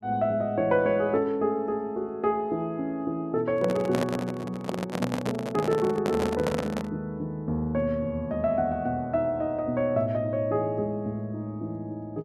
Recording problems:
microphone handling noise; from 3.5 to 7 s; peak +3 dB vs average level

